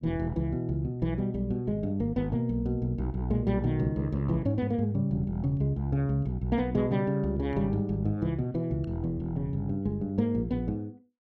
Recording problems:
none

